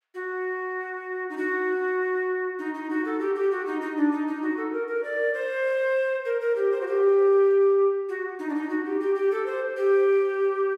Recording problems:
none

